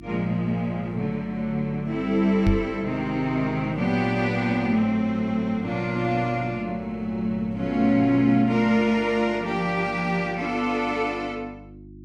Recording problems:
hum; 50 Hz, harmonics up to 350 Hz, SNR 19 dB
microphone thump; at 2.5 s; peak +4 dB vs average level

